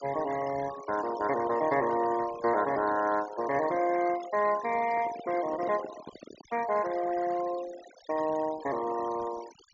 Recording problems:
low-pass filter; nothing above 7.2 kHz
denoising artefacts; signal-to-artefact ratio 15 dB
microphone handling noise; from 5 to 6.5 s; peak -8 dB vs average level

